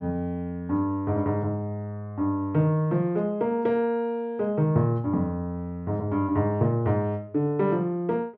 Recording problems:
none

